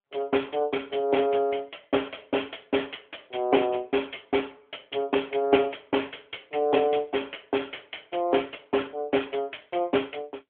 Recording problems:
telephone audio; 260 Hz to 3.3 kHz, AMR-NB

